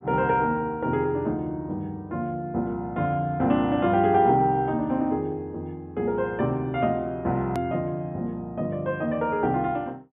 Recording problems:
low-pass filter; nothing above 3.6 kHz
click at an edit; at 7.5 s

